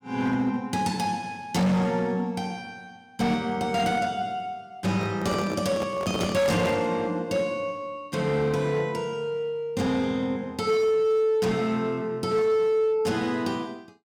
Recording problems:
distortion; hard clipping, signal-to-distortion ratio 12 dB
handling noise; from 5 to 7 s; peak -1 dB vs average level

